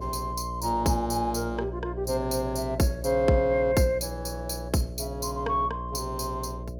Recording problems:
hum; 60 Hz, harmonics up to 660 Hz, SNR 9 dB

